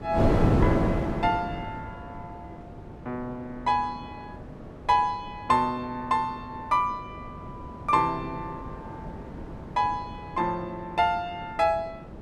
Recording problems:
wind on the microphone; below 440 Hz, SNR 4 dB

